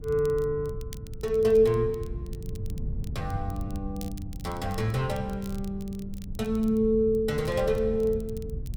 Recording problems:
wind on the microphone; below 130 Hz, SNR 11 dB
crackling; vinyl, SNR 25 dB

